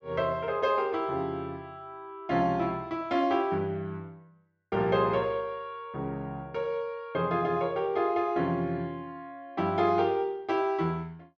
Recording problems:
treble cut off; nothing above 8 kHz

